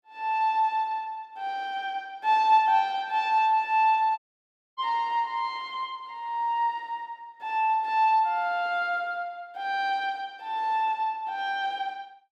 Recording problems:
audio cutting out; at 4 s for 0.5 s

